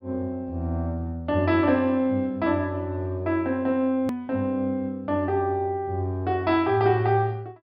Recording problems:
treble missing; nothing above 5.5 kHz
hard cut with a click; at 4 s

